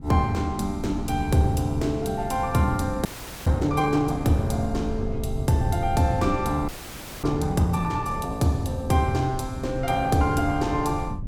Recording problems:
wind noise; below 120 Hz, SNR 10 dB
frozen audio; at 3 s and at 6.5 s for 0.5 s

